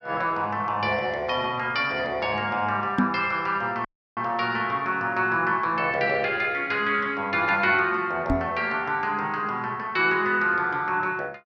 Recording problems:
knock on the microphone; at 3 s and at 8.5 s; peak +5 dB vs average level
dropout; at 4 s

